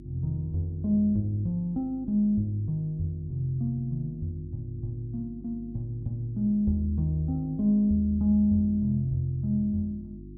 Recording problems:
electrical hum; 50 Hz, harmonics up to 350 Hz, SNR 17 dB

